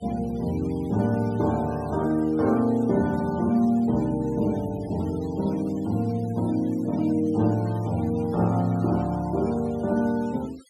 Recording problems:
denoising artefacts; signal-to-artefact ratio 23 dB

